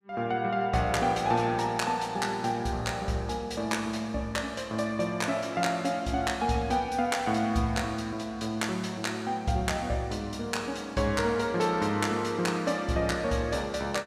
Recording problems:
none

